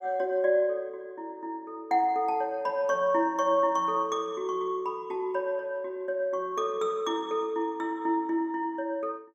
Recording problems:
none

